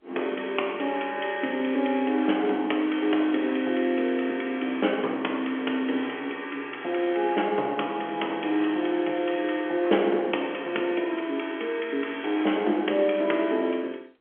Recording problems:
phone line; 260 Hz to 3.3 kHz, G.711

